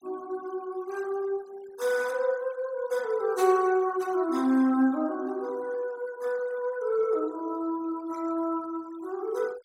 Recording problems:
denoising artefacts; signal-to-artefact ratio 23 dB

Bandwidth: 16 kHz